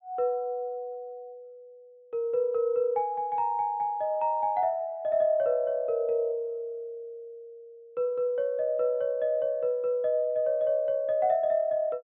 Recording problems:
treble cut off; nothing above 4 kHz

